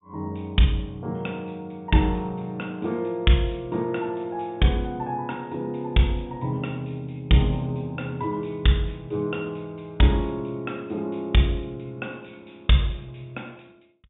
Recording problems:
treble missing; nothing above 3.7 kHz

